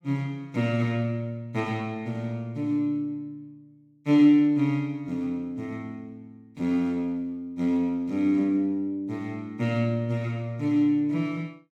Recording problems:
none

